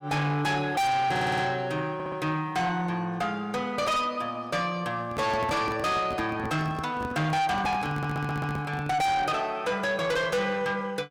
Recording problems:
distortion; soft clipping, signal-to-distortion ratio 6 dB
stutter; at 1 s, at 2 s and at 8 s
handling noise; from 5 to 9 s; peak -3 dB vs average level

